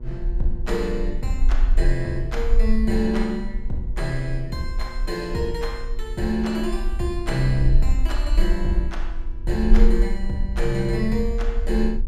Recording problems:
hum; 60 Hz, harmonics up to 1.1 kHz, SNR 19 dB
rumble; below 40 Hz, strongest tone 22 Hz, SNR 1 dB

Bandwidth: 15.5 kHz